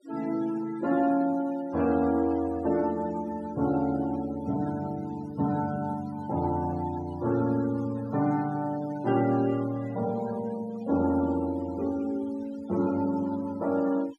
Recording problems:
denoising artefacts; signal-to-artefact ratio 19 dB

